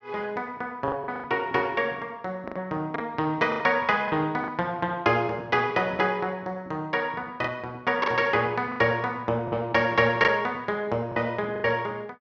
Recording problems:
packet loss; 7% of the sound replaced, filled with the last packet

